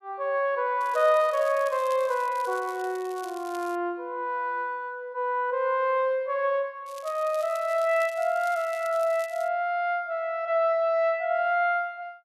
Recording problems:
crackle; from 1 to 4 s and from 7 to 9.5 s; loose cable, SNR 22 dB

